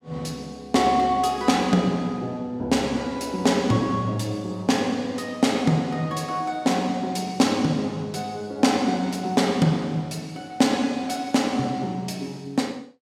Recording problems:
none

